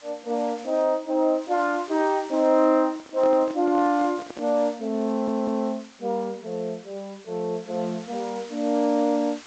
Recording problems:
lossy compression; G.722, log-spectral distance 5 dB
hiss; slope 0 dB per octave, SNR 22 dB
microphone handling noise; from 3 to 4.5 s; peak -9 dB vs average level
audio stuttering; at 5 s

